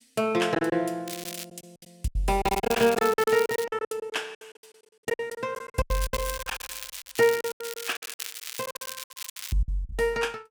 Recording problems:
lost packets; 20% of the sound replaced, filled with silence
crackle; 4 times, first at 1 s; loose cable, SNR 9 dB

